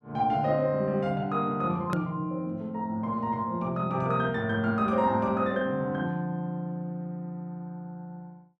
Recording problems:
hard cut with a click; at 2 s

